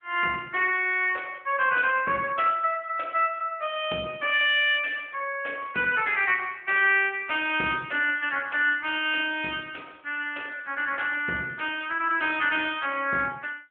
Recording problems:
telephone audio; 240 Hz to 3.3 kHz, AMR-NB

